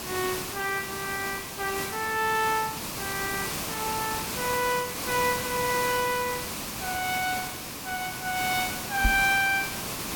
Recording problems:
background hiss; slope -2 dB per octave, SNR 4 dB
microphone bump; at 9 s; peak +5 dB vs average level

